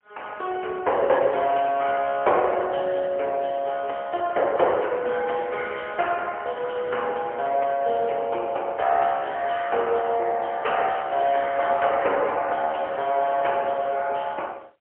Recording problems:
phone line; 340 Hz to 3.4 kHz, AMR-NB, then MP3

